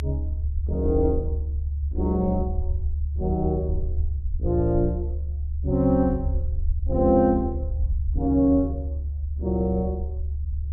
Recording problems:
rumble; below 74 Hz, strongest tone 72 Hz, SNR 4 dB

